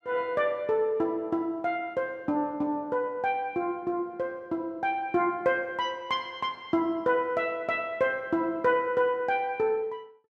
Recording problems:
none

